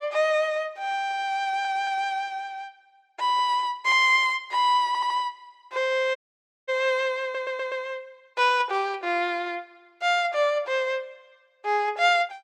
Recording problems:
stutter; at 1.5 s, at 5 s and at 7 s
dropout; at 6 s for 0.5 s

